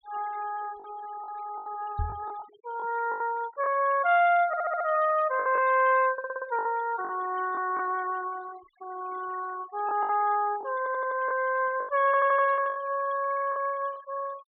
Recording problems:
treble missing; nothing above 4 kHz
noise reduction artefacts; signal-to-artefact ratio 21 dB
lost packets; 8% of the sound replaced, filled with the last packet
microphone bump; at 2 s; peak -1 dB vs average level
stutter; 4 times, first at 4.5 s

